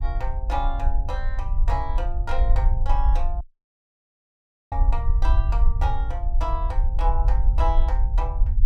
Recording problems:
rumble; below 50 Hz, SNR -8 dB
audio cutting out; at 3.5 s for 1.5 s

